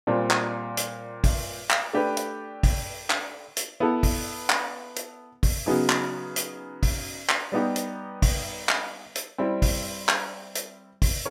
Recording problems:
none

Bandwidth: 16 kHz